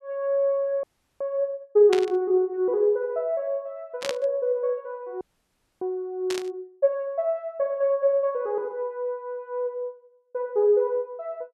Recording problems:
audio freezing; at 1 s and at 5 s for 0.5 s
burst of static; at 2 s, at 4 s and at 6.5 s; peak 0 dB vs average level

